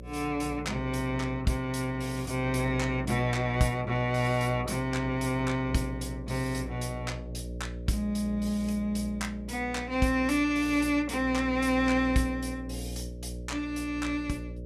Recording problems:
electrical hum; 60 Hz, harmonics up to 600 Hz, SNR 11 dB

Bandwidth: 15.5 kHz